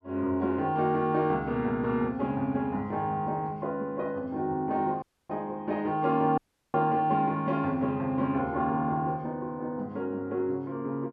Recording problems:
dropout; at 5 s and at 6.5 s

